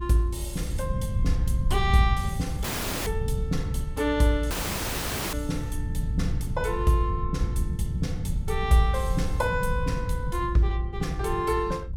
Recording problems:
rumble; below 110 Hz, SNR 3 dB
audio cutting out; at 2.5 s and at 4.5 s for 1 s

